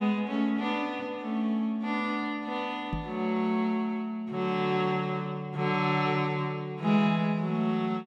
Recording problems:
microphone bump; at 3 s; peak -1 dB vs average level

